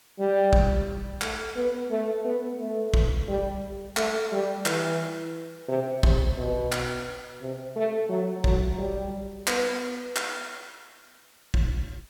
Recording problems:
background hiss; slope 0 dB per octave, SNR 28 dB

